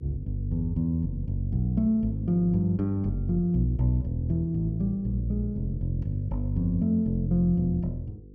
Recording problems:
hum; 50 Hz, harmonics up to 500 Hz, SNR 20 dB

